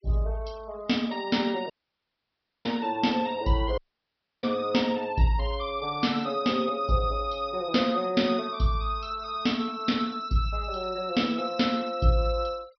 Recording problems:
treble missing; nothing above 5.5 kHz
denoising artefacts; signal-to-artefact ratio 25 dB
dropout; at 1.5 s for 1 s and at 4 s for 0.5 s

